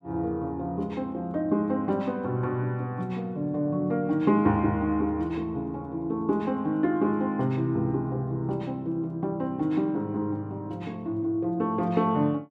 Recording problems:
none

